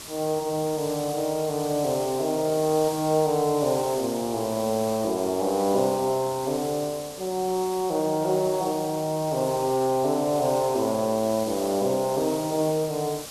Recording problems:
background hiss; SNR 12 dB

